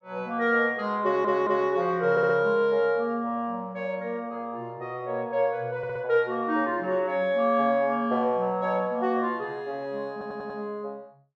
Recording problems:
stutter; 4 times, first at 1 s

